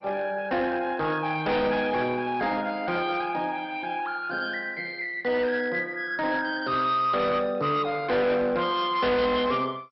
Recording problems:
lossy codec; MP2, log-spectral distance 3 dB, nothing above 5.2 kHz
distortion; hard clipping, signal-to-distortion ratio 10 dB

